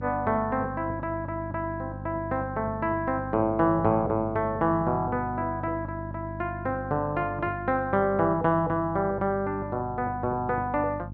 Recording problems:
hum; 50 Hz, harmonics up to 350 Hz, SNR 11 dB

